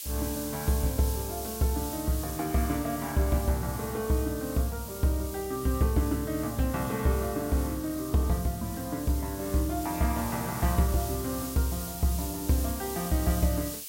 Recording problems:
hiss; SNR 9 dB

